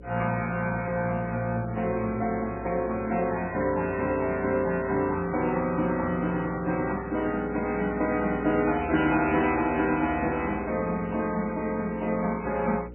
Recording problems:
lossy codec; MP3, log-spectral distance 3 dB, nothing above 2.4 kHz
hum; 60 Hz, harmonics up to 540 Hz, SNR 17 dB

